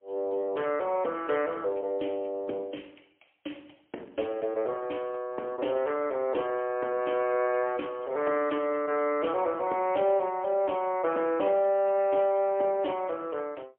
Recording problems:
phone line; 240 Hz to 3.2 kHz, AMR-NB, then MP3

